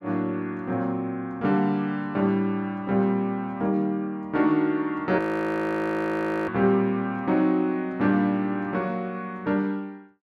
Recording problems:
audio freezing; at 5 s for 1.5 s

